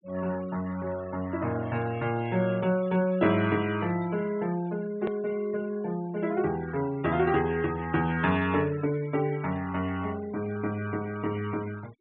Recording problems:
low-pass filter; nothing above 4 kHz
denoising artefacts; signal-to-artefact ratio 19 dB
click at an edit; at 5 s

